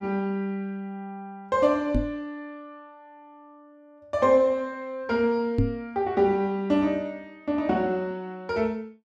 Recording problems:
knock on the microphone; at 2 s and at 5.5 s; peak +6 dB vs average level

